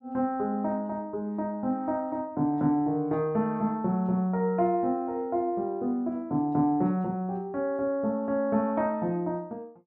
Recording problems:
none

